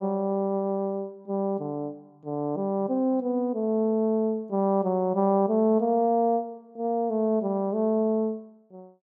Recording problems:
none

